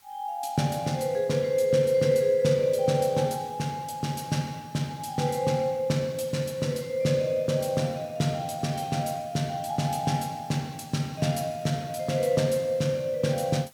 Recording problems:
hiss; slope 0 dB per octave, SNR 29 dB

